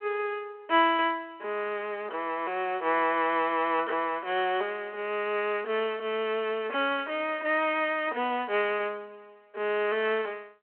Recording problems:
telephone audio; 320 Hz to 3.3 kHz, G.726

